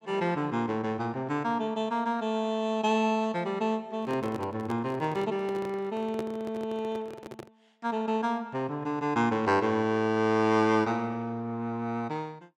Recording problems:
handling noise; from 4 to 7.5 s; peak -3 dB vs average level

